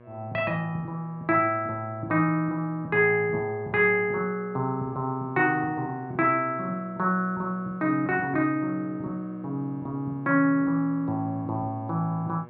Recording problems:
electrical hum; 60 Hz, harmonics up to 2.3 kHz, SNR 22 dB

